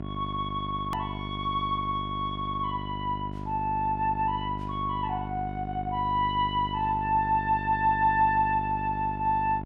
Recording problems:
hum; 50 Hz, harmonics up to 1.1 kHz, SNR 8 dB
edit click; at 1 s

